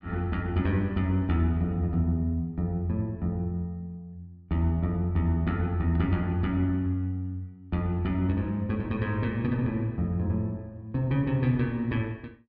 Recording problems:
low-pass filter; nothing above 5.5 kHz

